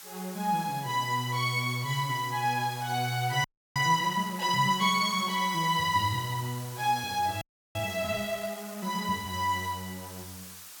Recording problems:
hiss; slope +2 dB per octave, SNR 15 dB
frozen audio; at 3.5 s and at 7.5 s

